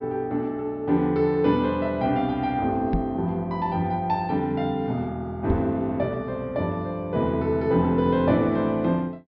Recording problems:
low-pass filter; nothing above 5.5 kHz
microphone thump; at 3 s and at 5.5 s; peak +2 dB vs average level

